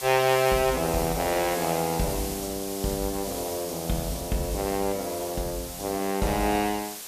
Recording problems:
background hiss; slope 0 dB per octave, SNR 8 dB

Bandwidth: 14.5 kHz